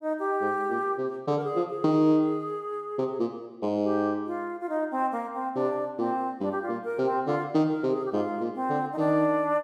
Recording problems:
none

